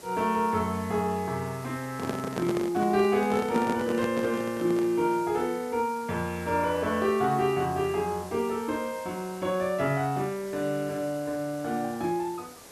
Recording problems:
background hiss; SNR 19 dB
microphone handling noise; from 2 to 5 s; peak 0 dB vs average level

